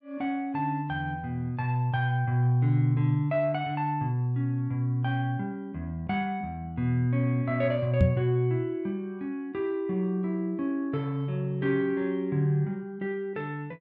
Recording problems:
microphone thump; at 8 s; peak +9 dB vs average level

